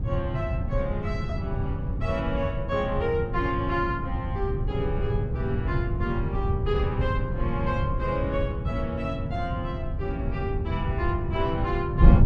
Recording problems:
wind noise; below 130 Hz, SNR -1 dB

